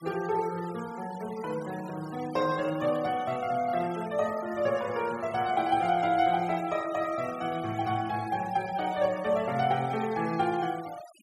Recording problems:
noise reduction artefacts; signal-to-artefact ratio 18 dB

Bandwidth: 14 kHz